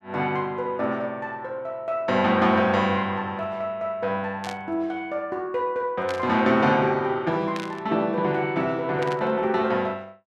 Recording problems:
static burst; 4 times, first at 4.5 s; peak -6 dB vs average level

